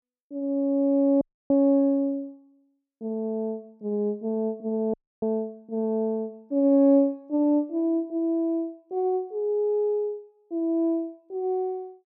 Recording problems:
dropout; at 1 s and at 5 s

